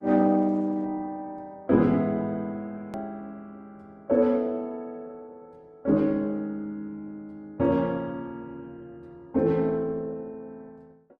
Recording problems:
lossy compression; Opus, log-spectral distance 2 dB, nothing above 13.1 kHz
click at an edit; at 3 s

